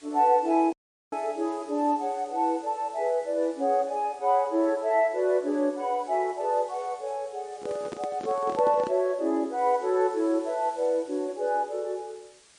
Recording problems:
lossy compression; MP3, log-spectral distance 3 dB
hiss; slope +1 dB per octave, SNR 26 dB
audio cutting out; at 0.5 s
microphone handling noise; from 7.5 to 9 s; peak -6 dB vs average level

